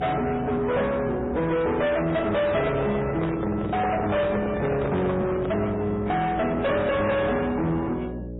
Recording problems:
lossy compression; AAC, then MP3, log-spectral distance 3 dB, nothing above 3.8 kHz
distorted audio; soft clipping, signal-to-distortion ratio 8 dB
electrical hum; 60 Hz, harmonics up to 600 Hz, SNR 12 dB
handling noise; from 2.5 to 5.5 s; peak +1 dB vs average level

